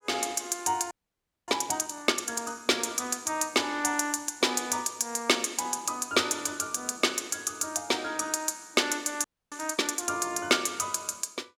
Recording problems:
audio freezing; at 1 s for 0.5 s and at 9 s

